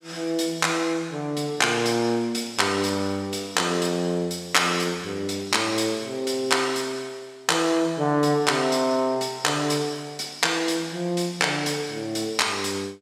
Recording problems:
none

